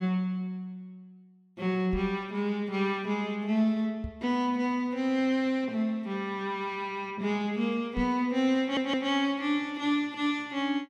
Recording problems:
microphone bump; at 2 s, at 4 s and at 8 s; peak -3 dB vs average level
stutter; at 8.5 s

